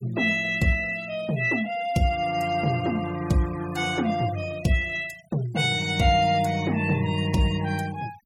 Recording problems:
noise reduction artefacts; signal-to-artefact ratio 19 dB

